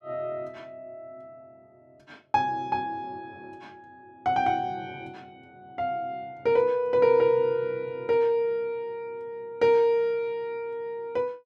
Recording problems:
none

